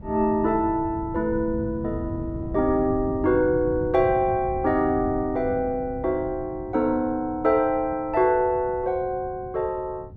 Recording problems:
wind noise; below 170 Hz, SNR 13 dB

